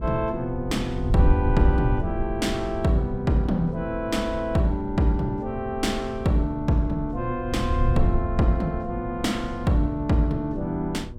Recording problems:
hum; 60 Hz, harmonics up to 1.1 kHz, SNR 18 dB
wind noise; below 82 Hz, SNR 6 dB

